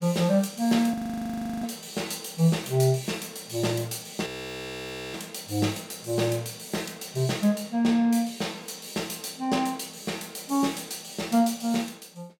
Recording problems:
audio freezing; at 1 s for 0.5 s and at 4.5 s for 1 s

